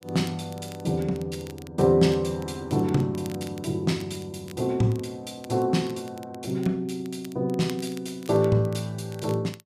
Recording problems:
crackling; vinyl, SNR 23 dB

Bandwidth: 14.5 kHz